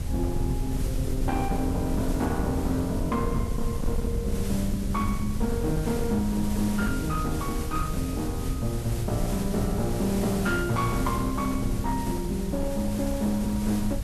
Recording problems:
distortion; hard clipping, signal-to-distortion ratio 11 dB
background hiss; slope -3 dB per octave, SNR 12 dB
rumble; below 110 Hz, SNR 6 dB
wind noise; below 92 Hz, SNR 9 dB

